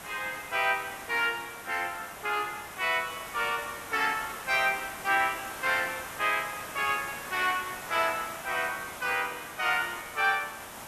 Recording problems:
background hiss; SNR 11 dB

